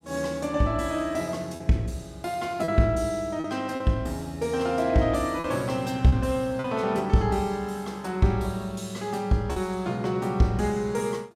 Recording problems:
packet loss; 3% of the sound replaced, filled with repeated pitch periods

